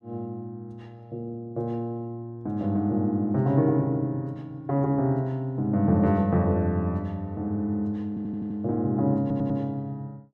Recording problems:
stutter; at 8 s and at 9 s

